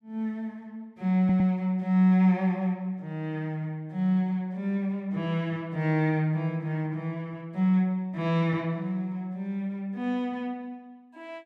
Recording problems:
audio stuttering; at 1 s

